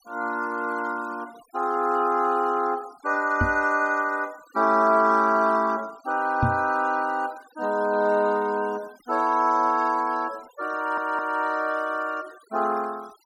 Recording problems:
denoising artefacts; signal-to-artefact ratio 25 dB
knock on the microphone; at 3.5 s and at 6.5 s; peak +4 dB vs average level
audio stuttering; at 11 s

